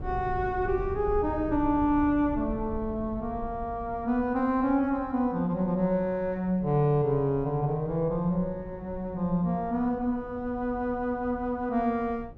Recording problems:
low-frequency rumble; below 130 Hz, SNR 15 dB

